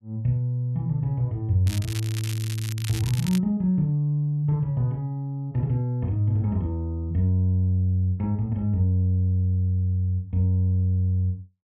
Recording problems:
crackle; from 1.5 to 3.5 s; loose cable, SNR 13 dB

